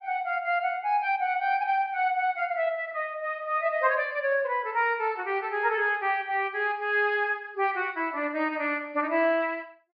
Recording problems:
low-pass filter; nothing above 5.1 kHz

